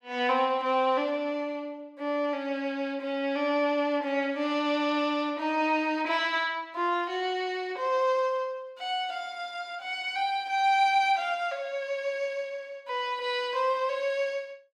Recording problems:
none

